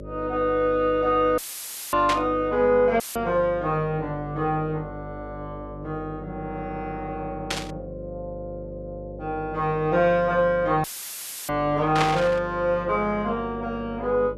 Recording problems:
hum; 50 Hz, harmonics up to 600 Hz, SNR 15 dB
audio cutting out; at 1.5 s for 0.5 s, at 3 s and at 11 s for 0.5 s; filled with static
burst of static; at 2 s, at 7.5 s and at 12 s; peak +3 dB vs average level

